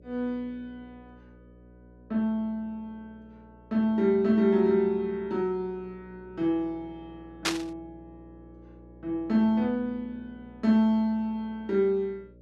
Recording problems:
electrical hum; 60 Hz, harmonics up to 600 Hz, SNR 25 dB
burst of static; at 7.5 s; peak +4 dB vs average level

